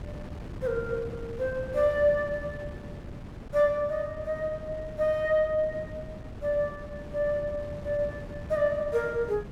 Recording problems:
wind on the microphone; below 310 Hz, SNR 13 dB

